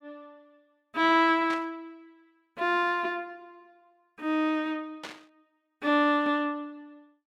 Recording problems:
burst of static; at 1.5 s and at 5 s; peak -8 dB vs average level

